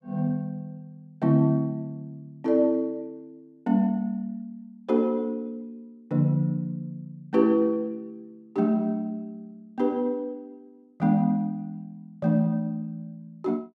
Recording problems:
none

